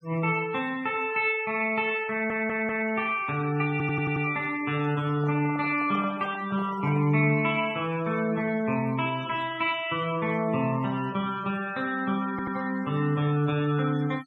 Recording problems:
denoising artefacts; signal-to-artefact ratio 21 dB
stutter; at 2 s, at 3.5 s and at 12 s
handling noise; from 5 to 7 s; peak -11 dB vs average level

